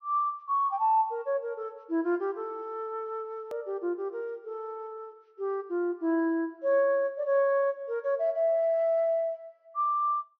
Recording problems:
treble missing; nothing above 6.2 kHz
hard cut with a click; at 3.5 s

